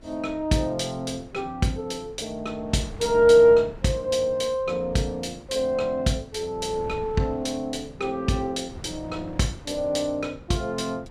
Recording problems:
wind on the microphone; below 290 Hz, SNR 19 dB

